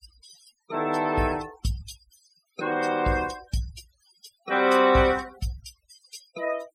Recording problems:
noise reduction artefacts; signal-to-artefact ratio 18 dB

